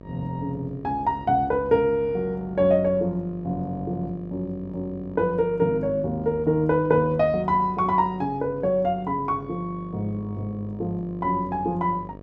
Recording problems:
hum; 50 Hz, harmonics up to 1.3 kHz, SNR 18 dB

